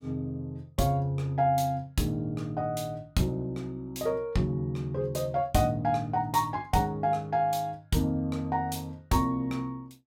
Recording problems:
none

